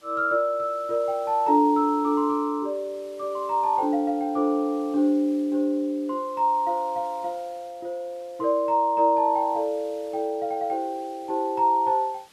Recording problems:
hiss; slope 0 dB per octave, SNR 29 dB

